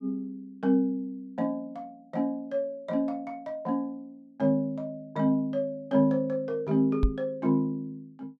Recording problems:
microphone bump; at 7 s; peak +7 dB vs average level

